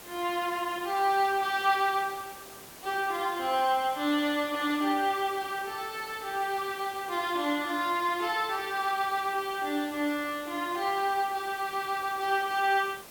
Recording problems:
background hiss; slope -3 dB per octave, SNR 17 dB

